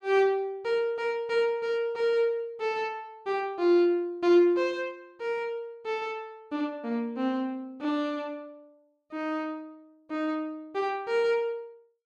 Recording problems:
none

